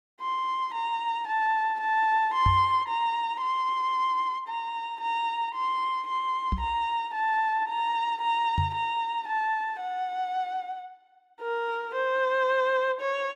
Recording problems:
microphone bump; at 2.5 s, at 6.5 s and at 8.5 s; peak +4 dB vs average level

